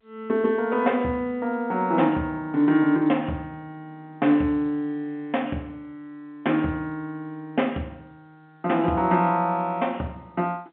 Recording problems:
phone line; 190 Hz to 3.7 kHz, G.711

